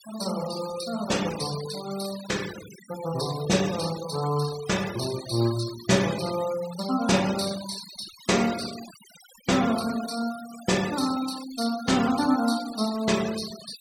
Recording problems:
noise reduction artefacts; signal-to-artefact ratio 12 dB

